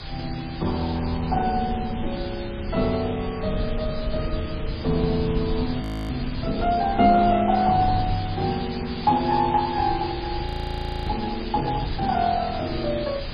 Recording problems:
lossy codec; MP2, then MP3, log-spectral distance 17 dB
hiss; SNR 12 dB
low-frequency rumble; below 110 Hz, SNR 10 dB
frozen audio; at 6 s and at 10 s for 0.5 s

